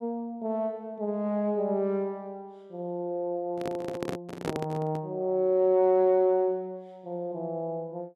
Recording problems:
handling noise; from 3.5 to 5 s; peak +1 dB vs average level

